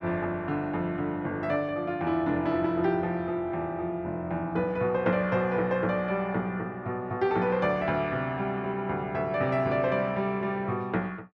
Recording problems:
none

